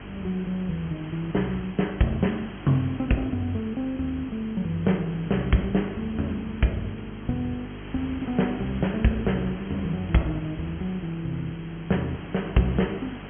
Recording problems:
treble cut off; nothing above 3.3 kHz
hum; 50 Hz, harmonics up to 450 Hz, SNR 14 dB
hiss; SNR 16 dB

